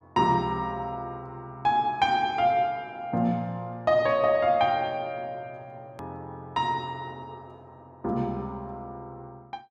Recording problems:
edit click; at 6 s

